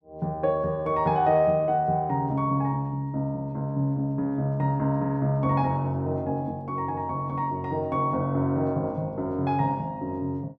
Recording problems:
none

